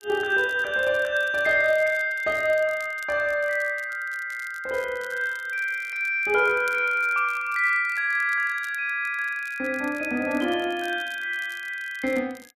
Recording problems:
crackle; vinyl, SNR 25 dB

